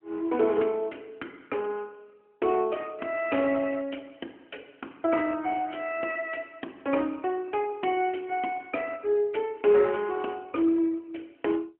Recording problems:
phone line; 240 Hz to 3.3 kHz, AMR-NB

